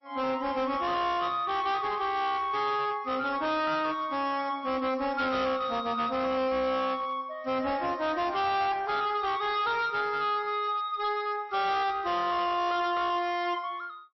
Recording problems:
lossy codec; MP3, log-spectral distance 2 dB, nothing above 5.7 kHz
distortion; hard clipping, uneven, signal-to-distortion ratio 10 dB

